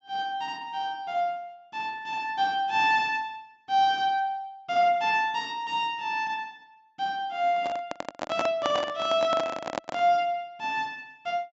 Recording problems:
low-pass filter; nothing above 8 kHz
handling noise; from 7.5 to 10 s; peak +2 dB vs average level

